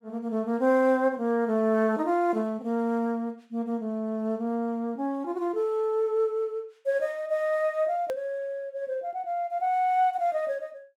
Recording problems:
click at an edit; at 8 s

